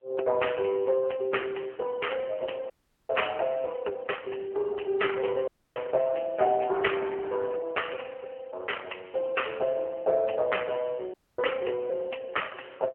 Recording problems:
phone line; 340 Hz to 3 kHz, AMR-NB
dropout; at 2.5 s, at 5.5 s and at 11 s

